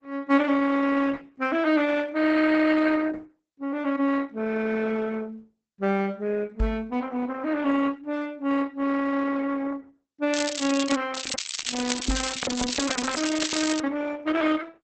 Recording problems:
lossy compression; Opus, log-spectral distance 7 dB, nothing above 8 kHz
microphone bump; at 6.5 s and at 12 s; peak +3 dB vs average level
crackling; at 10 s and from 11 to 14 s; loose cable, SNR 5 dB

